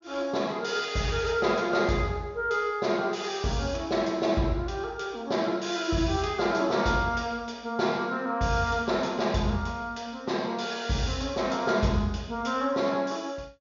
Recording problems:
low-pass filter; nothing above 7 kHz

